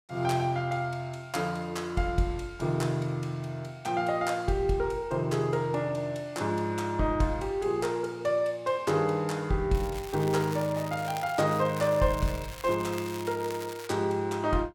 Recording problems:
crackle; from 9.5 to 14 s; loose cable, SNR 15 dB

